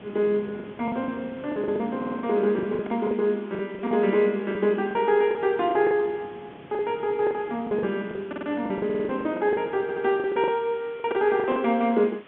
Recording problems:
phone line; 110 Hz to 3.6 kHz, G.711
background hiss; SNR 25 dB
wind on the microphone; below 500 Hz, SNR 22 dB
lost packets; 13% of the sound replaced, filled with the last packet
audio stuttering; 4 times, first at 2 s

